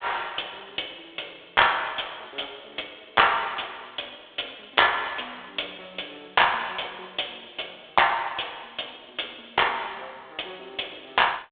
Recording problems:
telephone audio; 300 Hz to 3.6 kHz, G.726

